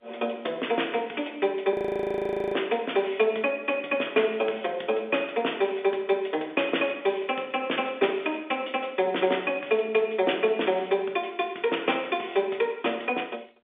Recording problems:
telephone audio; 260 Hz to 3.6 kHz, G.711
audio freezing; at 1.5 s for 1 s

